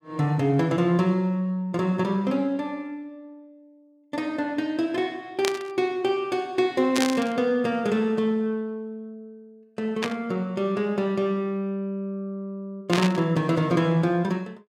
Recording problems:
burst of static; 4 times, first at 5.5 s; peak +3 dB vs average level

